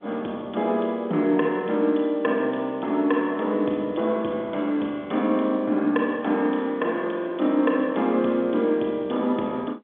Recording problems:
phone line; 190 Hz to 3.5 kHz, G.711

